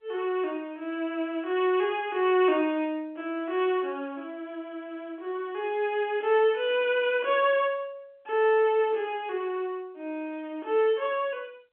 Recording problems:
telephone audio; 220 Hz to 3.9 kHz, G.711

